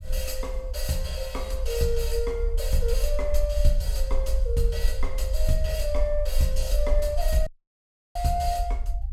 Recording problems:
rumble; below 50 Hz, SNR 0 dB
audio cutting out; at 7.5 s for 0.5 s

